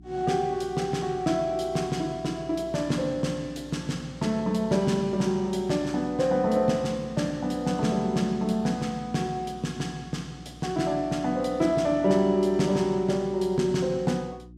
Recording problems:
electrical hum; 60 Hz, harmonics up to 360 Hz, SNR 21 dB

